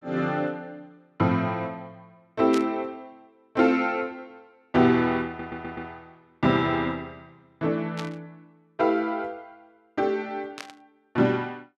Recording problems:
static burst; at 2.5 s, at 8 s and at 11 s; peak -5 dB vs average level
audio stuttering; at 5.5 s

